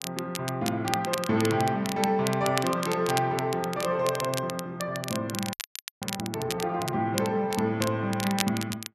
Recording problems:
crackle; vinyl, SNR 8 dB
frozen audio; at 5.5 s

